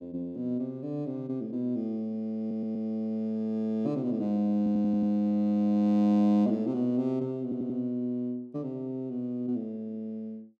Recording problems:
audio stuttering; at 2.5 s, at 4.5 s and at 7.5 s

